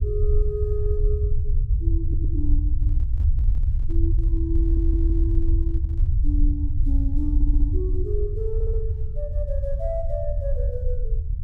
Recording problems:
rumble; below 70 Hz, SNR -8 dB
stutter; 4 times, first at 2 s
handling noise; from 3 to 6 s; peak -11 dB vs average level

